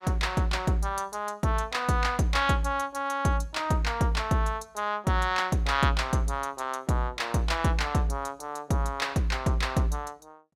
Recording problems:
none

